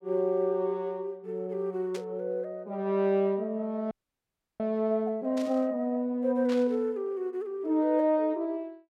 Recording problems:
burst of static; at 2 s, at 5.5 s and at 6.5 s; peak -8 dB vs average level
audio freezing; at 4 s for 0.5 s

